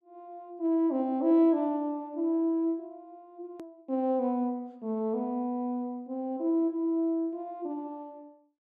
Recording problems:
edit click; at 3.5 s

